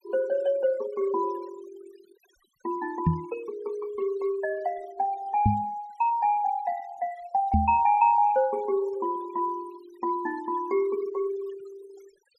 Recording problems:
noise reduction artefacts; signal-to-artefact ratio 21 dB
knock on the microphone; at 3 s, at 5.5 s and at 7.5 s; peak +8 dB vs average level

